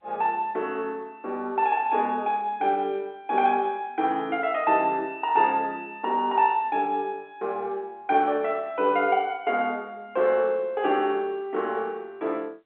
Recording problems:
telephone audio; 260 Hz to 3.5 kHz, G.711

